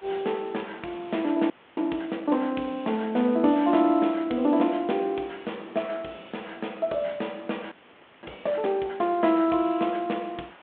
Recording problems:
telephone audio; 170 Hz to 3.5 kHz, G.726
background hiss; SNR 27 dB
audio freezing; at 1.5 s and at 7.5 s for 0.5 s

